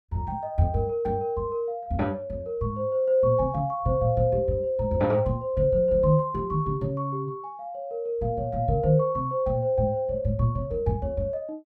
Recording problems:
none

